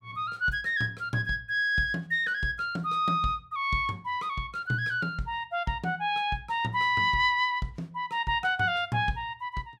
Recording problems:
none

